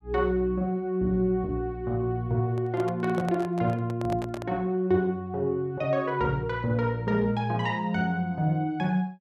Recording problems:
microphone handling noise; from 2.5 to 4.5 s; peak -4 dB vs average level

